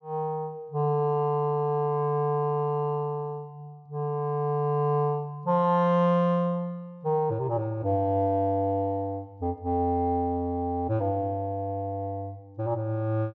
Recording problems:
treble missing; nothing above 8 kHz

